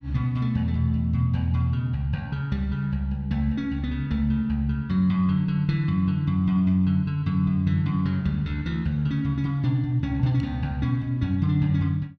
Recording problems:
none

